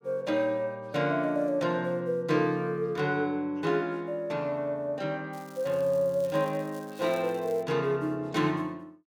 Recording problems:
crackle; from 5.5 to 7.5 s; loose cable, SNR 24 dB

